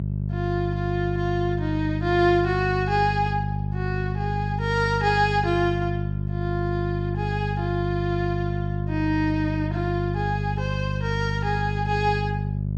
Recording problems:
hum; 50 Hz, harmonics up to 400 Hz, SNR 1 dB

